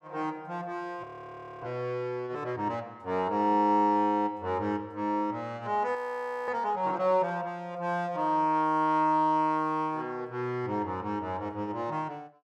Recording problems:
frozen audio; at 1 s for 0.5 s and at 6 s for 0.5 s

